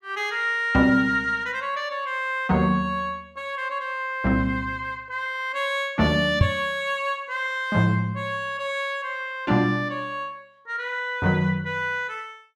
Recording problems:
microphone bump; at 6.5 s; peak +9 dB vs average level

